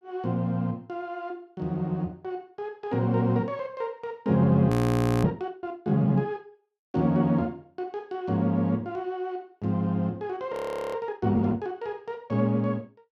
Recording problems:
audio freezing; at 4.5 s for 0.5 s and at 11 s

